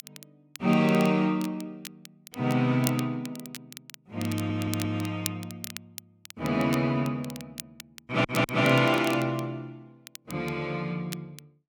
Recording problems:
crackling; vinyl, SNR 15 dB
stutter; at 4.5 s and at 8 s

